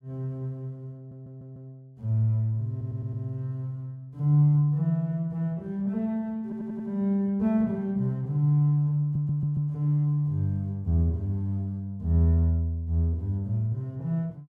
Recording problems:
stutter; 4 times, first at 1 s

